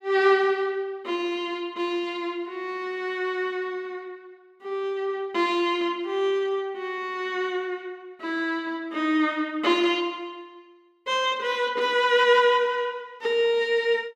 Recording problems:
none

